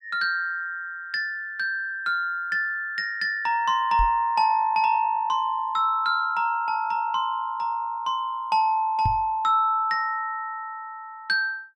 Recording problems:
microphone thump; at 4 s and at 9 s; peak 0 dB vs average level

